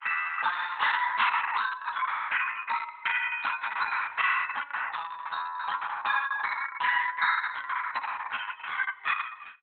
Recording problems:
lossy compression; Opus, log-spectral distance 6 dB, nothing above 4 kHz

